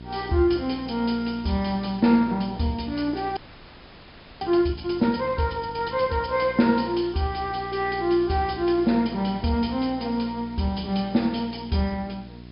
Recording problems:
low-pass filter; nothing above 5.2 kHz
lossy codec; MP2, log-spectral distance 7 dB
hum; 60 Hz, harmonics up to 1 kHz, SNR 17 dB
background hiss; SNR 27 dB
frozen audio; at 3.5 s for 1 s

